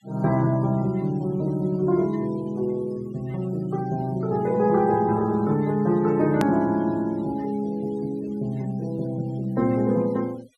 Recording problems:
denoising artefacts; signal-to-artefact ratio 26 dB
edit click; at 6.5 s

